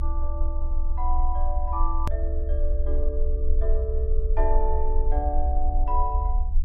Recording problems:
low-frequency rumble; below 62 Hz, strongest tone 22 Hz, SNR -5 dB
edit click; at 2 s

